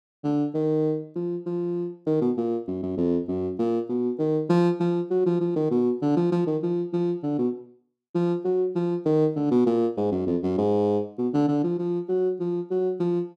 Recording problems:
none

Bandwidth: 12.5 kHz